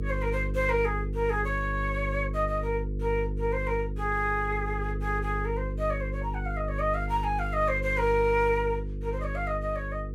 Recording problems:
hum; 50 Hz, harmonics up to 500 Hz, SNR 4 dB

